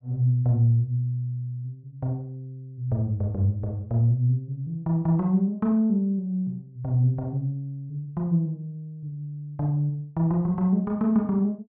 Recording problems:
none

